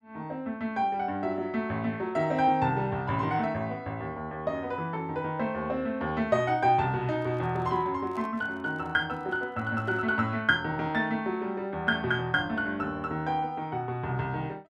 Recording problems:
microphone handling noise; from 7 to 10 s; peak -11 dB vs average level

